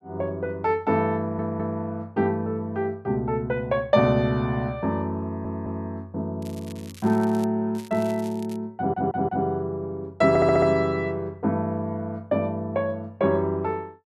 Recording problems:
stutter; 4 times, first at 1 s
crackling; from 6.5 to 7.5 s and at 8 s; loose cable, SNR 22 dB

